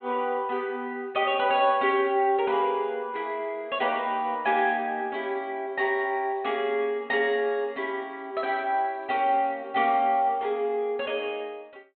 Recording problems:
treble missing; nothing above 4 kHz

